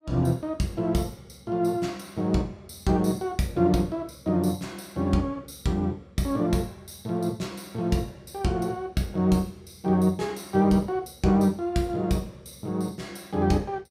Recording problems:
none

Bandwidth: 15.5 kHz